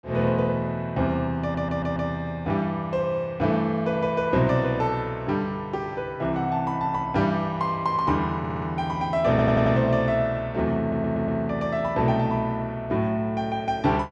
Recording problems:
audio stuttering; 4 times, first at 1.5 s

